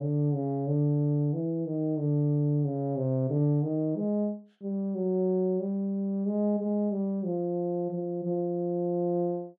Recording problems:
none

